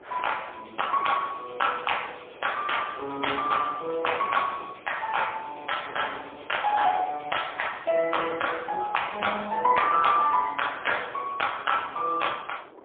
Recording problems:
phone line; 300 Hz to 3.4 kHz, AMR-NB, then MP3
wind noise; below 780 Hz, SNR 21 dB

